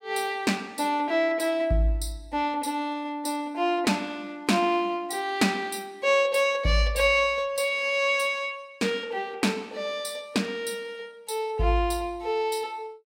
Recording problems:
none

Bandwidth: 16 kHz